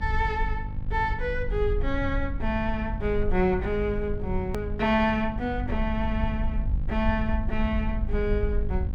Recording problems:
hum; 50 Hz, harmonics up to 850 Hz, SNR 10 dB
rumble; below 66 Hz, SNR 4 dB
click at an edit; at 4.5 s

